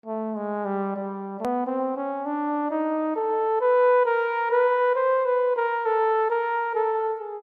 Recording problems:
edit click; at 1.5 s

